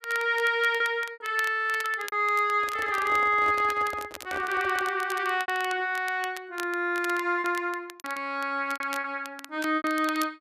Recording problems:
crackling; vinyl, SNR 17 dB
packet loss; 7% of the sound replaced, filled with repeated pitch periods
microphone handling noise; from 2.5 to 5 s; peak -8 dB vs average level

